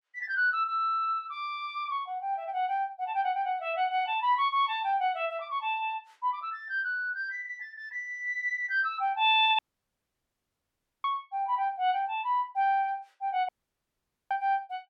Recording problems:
dropout; at 9.5 s for 1.5 s and at 13 s for 1 s

